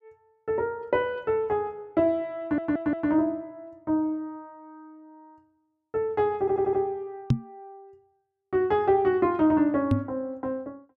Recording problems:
audio stuttering; at 2.5 s and at 6.5 s
microphone bump; at 7.5 s and at 10 s; peak +8 dB vs average level

